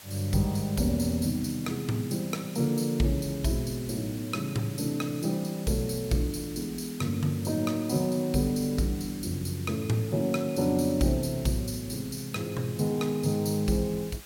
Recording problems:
hiss; slope 0 dB per octave, SNR 17 dB

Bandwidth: 16.5 kHz